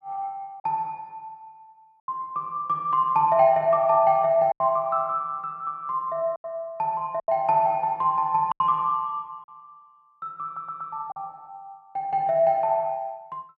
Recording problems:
packet loss; 4% of the sound replaced, filled with silence
audio stuttering; at 10 s

